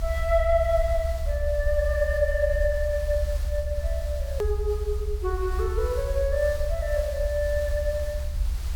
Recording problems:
hiss; slope -1 dB per octave, SNR 18 dB
rumble; below 68 Hz, SNR 3 dB
edit click; at 4.5 s

